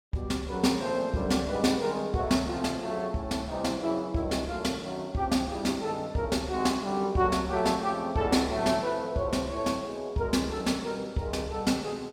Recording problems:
none

